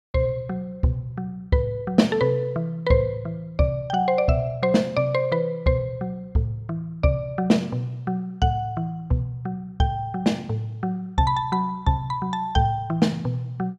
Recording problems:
none

